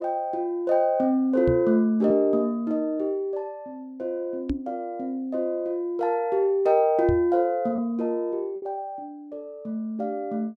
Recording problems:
packet loss; 0.9% of the sound replaced, filled with repeated pitch periods
microphone thump; at 1.5 s, at 4.5 s and at 7 s; peak +1 dB vs average level

